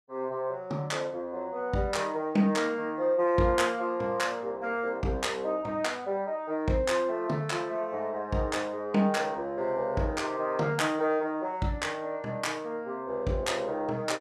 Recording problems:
none

